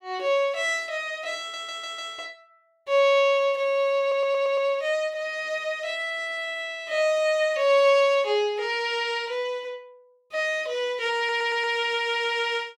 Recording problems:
audio stuttering; at 1.5 s, at 4 s and at 11 s

